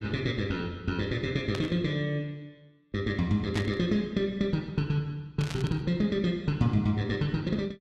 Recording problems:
burst of static; at 1.5 s, at 3.5 s and at 5.5 s; peak -2 dB vs average level

